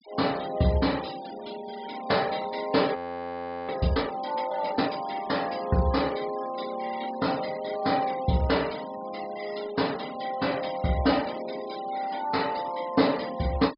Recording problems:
treble missing; nothing above 5.2 kHz
denoising artefacts; signal-to-artefact ratio 17 dB
frozen audio; at 3 s for 0.5 s

